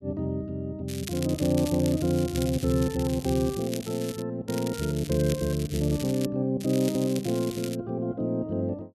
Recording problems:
crackle; from 1 to 4 s, from 4.5 to 6.5 s and from 6.5 to 8 s; loose cable, SNR 13 dB

